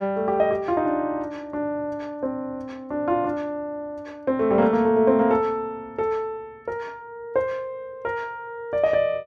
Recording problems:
none

